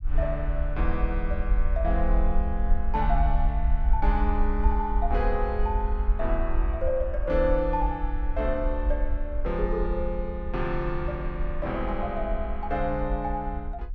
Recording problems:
rumble; below 54 Hz, SNR 0 dB

